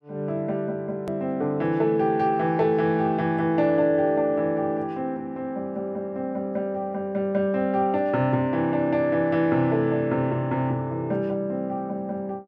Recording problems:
click at an edit; at 1 s

